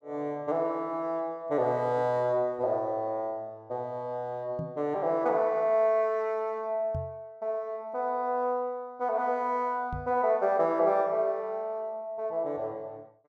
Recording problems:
microphone thump; at 4.5 s, at 7 s and at 10 s; peak -3 dB vs average level

